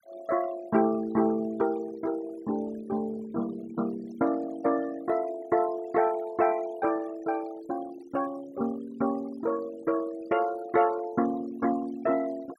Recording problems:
denoising artefacts; signal-to-artefact ratio 20 dB

